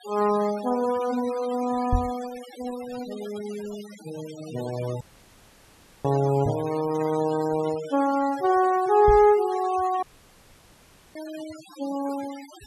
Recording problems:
denoising artefacts; signal-to-artefact ratio 18 dB
knock on the microphone; at 2 s, at 6.5 s and at 9 s; peak +3 dB vs average level
audio cutting out; at 5 s for 1 s and at 10 s for 1 s

